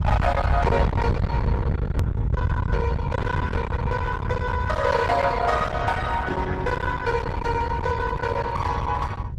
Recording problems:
lossy codec; Opus, log-spectral distance 2 dB, nothing above 14.1 kHz
distorted audio; hard clipping, uneven, signal-to-distortion ratio 7 dB
rumble; below 220 Hz, SNR 2 dB
hard cut with a click; at 2 s

